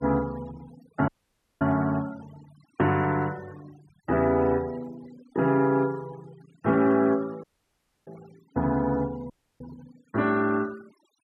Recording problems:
noise reduction artefacts; signal-to-artefact ratio 23 dB
audio cutting out; at 1 s for 0.5 s, at 7.5 s for 0.5 s and at 9.5 s

